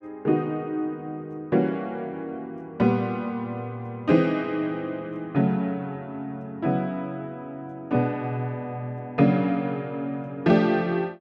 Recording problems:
none

